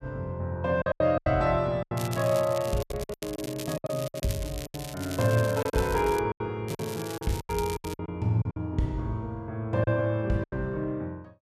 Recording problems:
lost packets; 12% of the sound replaced, filled with silence
crackling; from 2 to 6 s and from 6.5 to 8 s; loose cable, SNR 13 dB

